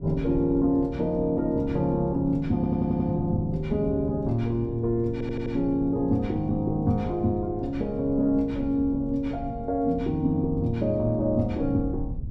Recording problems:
rumble; below 130 Hz, SNR 13 dB
stutter; at 2.5 s and at 5 s

